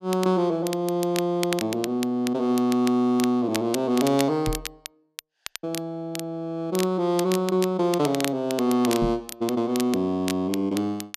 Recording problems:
crackle; vinyl, SNR 12 dB
microphone thump; at 4.5 s and at 9 s; peak -1 dB vs average level

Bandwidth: 14 kHz